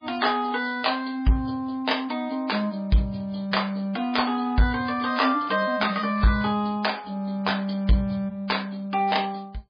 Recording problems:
codec artefacts; MP3, log-spectral distance 5 dB, nothing above 5 kHz
distorted audio; soft clipping, signal-to-distortion ratio 12 dB

